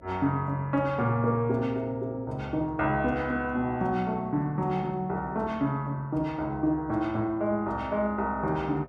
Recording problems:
hum; 60 Hz, harmonics up to 660 Hz, SNR 26 dB

